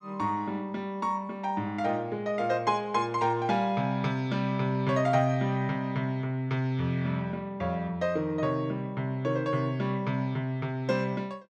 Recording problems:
none

